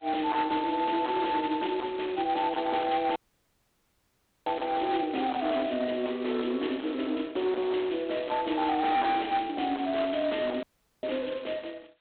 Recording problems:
phone line; 260 Hz to 3.8 kHz, G.726
distortion; hard clipping, signal-to-distortion ratio 10 dB
dropout; at 3 s for 1.5 s and at 11 s

